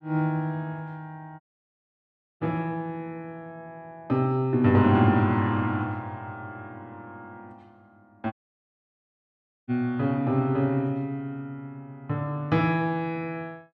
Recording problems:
audio cutting out; at 1.5 s for 1 s and at 8.5 s for 1.5 s

